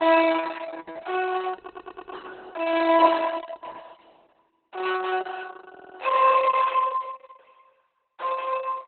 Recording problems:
lossy codec; Opus, log-spectral distance 5 dB, nothing above 4 kHz
stutter; at 1.5 s and at 5.5 s

